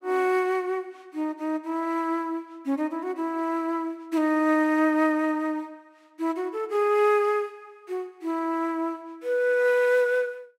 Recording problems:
none

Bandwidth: 16 kHz